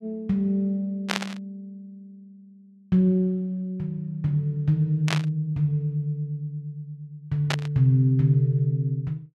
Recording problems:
burst of static; at 1 s, at 5 s and at 7.5 s; peak +3 dB vs average level

